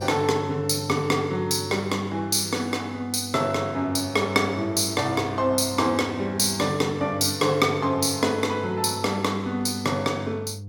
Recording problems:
electrical hum; 50 Hz, harmonics up to 500 Hz, SNR 14 dB

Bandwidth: 17.5 kHz